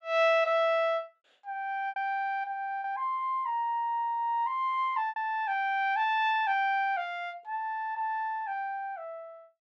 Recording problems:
packet loss; 2% of the sound replaced, filled with repeated pitch periods

